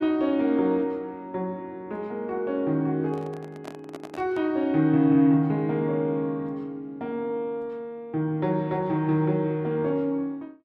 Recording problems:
microphone handling noise; from 3 to 4.5 s; peak -9 dB vs average level

